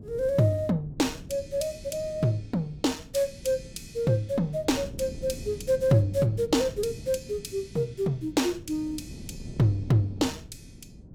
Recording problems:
wind noise; below 230 Hz, SNR 16 dB

